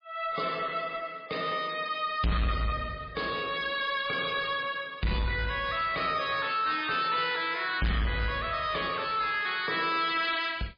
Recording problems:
lossy codec; MP3, log-spectral distance 5 dB, nothing above 5 kHz
distortion; soft clipping, signal-to-distortion ratio 7 dB

